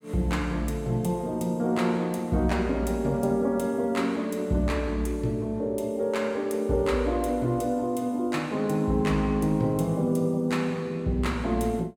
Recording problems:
none

